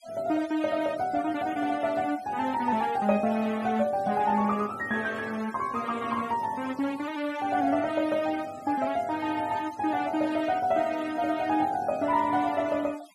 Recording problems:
noise reduction artefacts; signal-to-artefact ratio 21 dB

